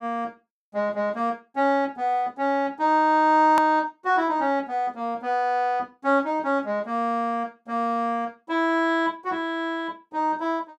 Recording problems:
click at an edit; at 3.5 s

